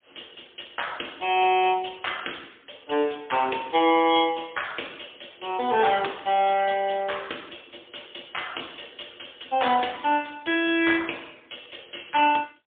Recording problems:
telephone audio; 260 Hz to 3.5 kHz, AMR-NB, then MP3

